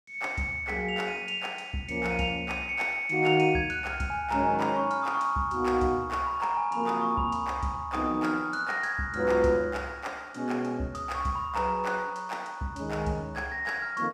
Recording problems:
none

